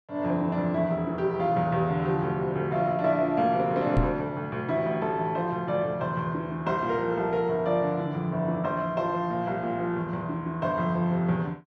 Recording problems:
microphone bump; at 4 s; peak +4 dB vs average level

